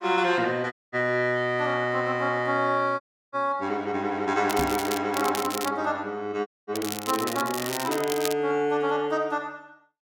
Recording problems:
audio cutting out; at 0.5 s, at 3 s and at 6.5 s
crackle; at 4.5 s, at 5 s and from 6.5 to 8.5 s; loose cable, SNR 8 dB
knock on the microphone; at 4.5 s; peak -2 dB vs average level

